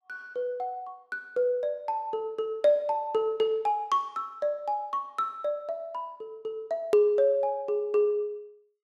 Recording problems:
edit click; at 7 s

